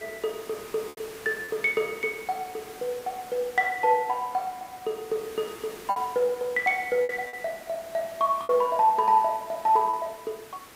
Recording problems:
background hiss; slope -3 dB per octave, SNR 18 dB
lost packets; 4% of the sound replaced, filled with repeated pitch periods

